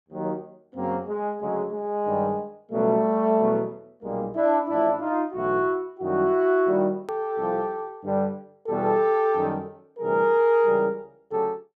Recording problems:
edit click; at 7 s

